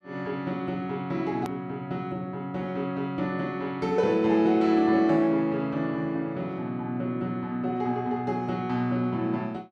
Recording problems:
click at an edit; at 1.5 s

